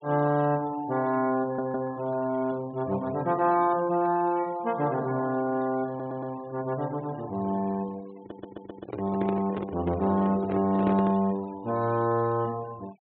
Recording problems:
low-pass filter; nothing above 4 kHz
denoising artefacts; signal-to-artefact ratio 22 dB
stutter; at 1.5 s, at 6 s and at 8 s
handling noise; from 8 to 11 s; peak 0 dB vs average level

